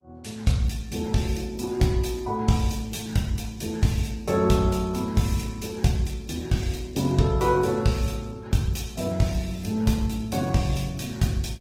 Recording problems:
lossy codec; Opus, log-spectral distance 4 dB, nothing above 16 kHz

